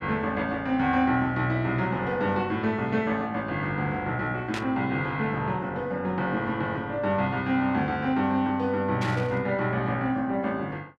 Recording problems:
static burst; at 4.5 s and at 9 s; peak -3 dB vs average level

